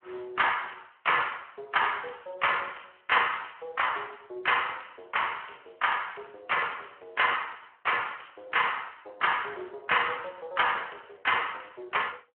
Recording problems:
telephone audio; 320 Hz to 3.2 kHz, Speex

